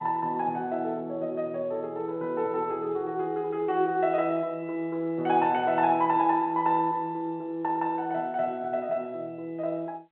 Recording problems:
telephone audio; 190 Hz to 3.6 kHz, G.711

